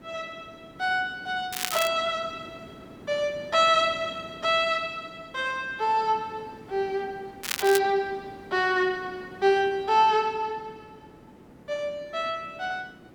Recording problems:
hiss; slope -9 dB per octave, SNR 21 dB
crackle; at 1.5 s and at 7.5 s; loose cable, SNR 6 dB

